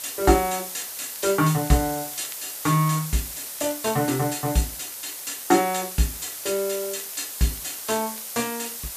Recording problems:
hiss; slope +1 dB per octave, SNR 7 dB
crackle; vinyl, SNR 27 dB

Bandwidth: 14.5 kHz